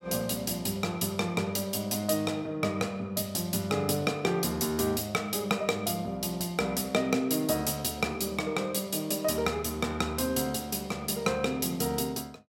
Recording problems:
none

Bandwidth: 16.5 kHz